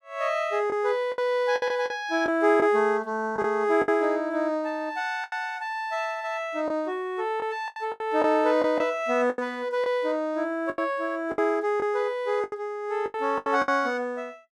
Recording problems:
lost packets; 9% of the sound replaced, filled with the last packet

